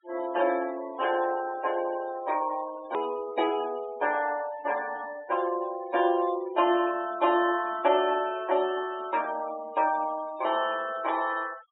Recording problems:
treble cut off; nothing above 4 kHz
denoising artefacts; signal-to-artefact ratio 17 dB
click at an edit; at 3 s

